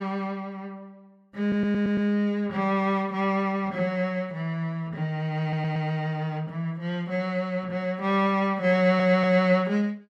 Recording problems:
audio stuttering; at 1.5 s, at 5.5 s and at 9 s

